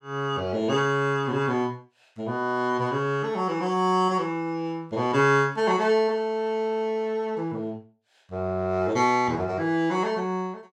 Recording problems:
none

